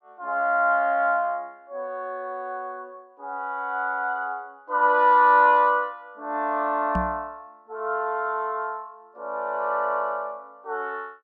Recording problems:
microphone bump; at 7 s; peak -1 dB vs average level

